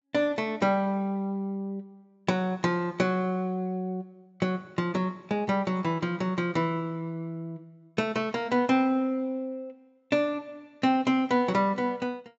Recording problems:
treble missing; nothing above 7.6 kHz

